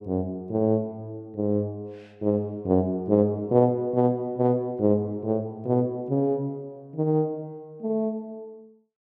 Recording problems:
none

